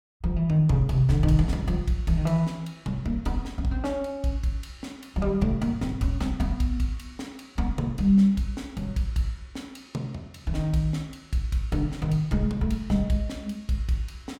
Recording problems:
none

